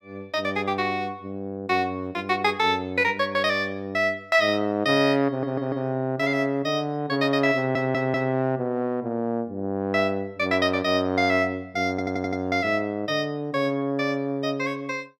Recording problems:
audio stuttering; at 5.5 s, at 7.5 s and at 12 s

